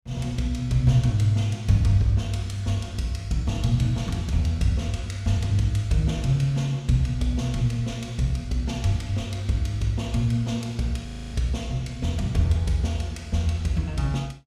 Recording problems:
frozen audio; at 11 s

